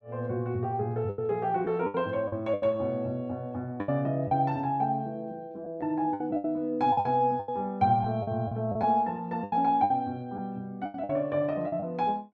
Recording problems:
lost packets; 10% of the sound replaced, filled with the last packet

